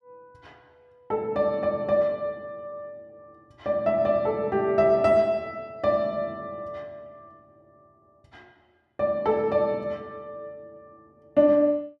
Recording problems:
none

